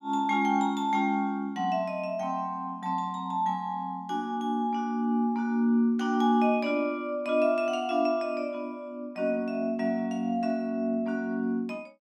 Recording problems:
none

